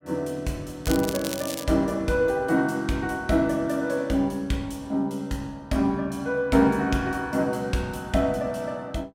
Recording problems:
crackle; at 1 s; loose cable, SNR 9 dB

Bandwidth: 16.5 kHz